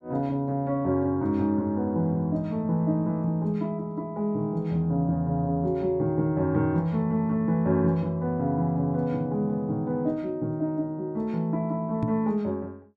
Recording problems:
microphone bump; at 12 s; peak +1 dB vs average level

